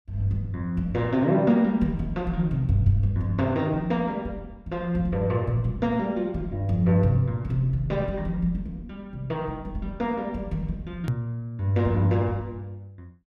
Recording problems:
click at an edit; at 11 s

